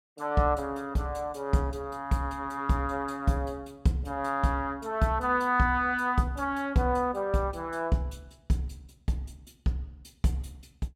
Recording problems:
none

